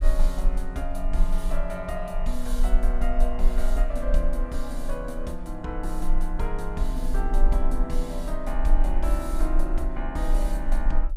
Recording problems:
rumble; below 34 Hz, strongest tone 22 Hz, SNR -4 dB

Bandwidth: 15.5 kHz